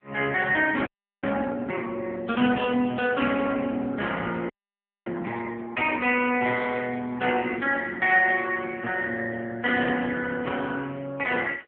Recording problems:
telephone audio; 190 Hz to 3.4 kHz, AMR-NB
audio freezing; at 1 s and at 4.5 s for 0.5 s

